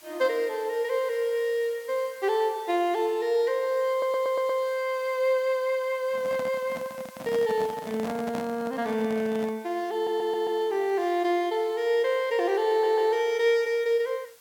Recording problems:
background hiss; SNR 25 dB
audio stuttering; at 4 s, at 10 s and at 13 s
handling noise; from 6 to 9.5 s; peak -5 dB vs average level

